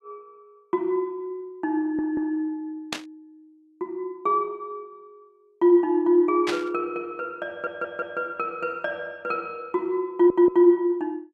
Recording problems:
audio stuttering; at 2 s, at 7.5 s and at 10 s
burst of static; at 3 s and at 6.5 s; peak 0 dB vs average level

